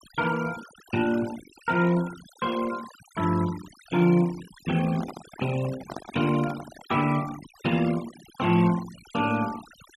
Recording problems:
denoising artefacts; signal-to-artefact ratio 16 dB
handling noise; from 5 to 7 s; peak -6 dB vs average level

